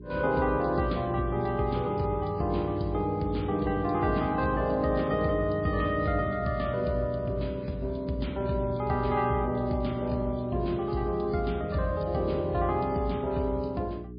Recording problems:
codec artefacts; MP3, log-spectral distance 2 dB
electrical hum; 60 Hz, harmonics up to 420 Hz, SNR 14 dB

